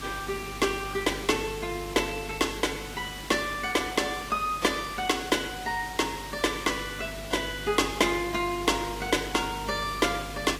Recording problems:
lossy codec; AAC, log-spectral distance 6 dB, nothing above 15.1 kHz
electrical hum; 50 Hz, harmonics up to 450 Hz, SNR 17 dB
background hiss; slope -2 dB per octave, SNR 12 dB

